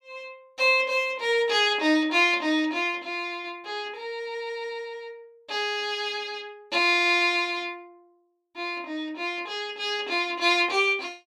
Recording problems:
none

